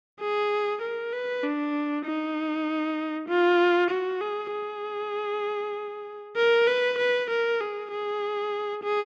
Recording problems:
none

